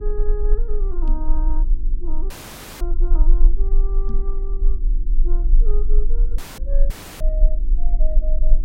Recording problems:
hum; 50 Hz, harmonics up to 350 Hz, SNR 10 dB
low-frequency rumble; below 32 Hz, strongest tone 20 Hz, SNR -14 dB
microphone thump; at 1 s and at 4 s; peak +5 dB vs average level
dropout; at 2.5 s for 0.5 s, at 6.5 s and at 7 s; filled with static

